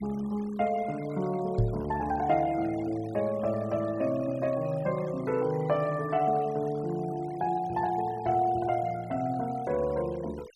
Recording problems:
noise reduction artefacts; signal-to-artefact ratio 21 dB
microphone thump; at 1.5 s; peak +6 dB vs average level

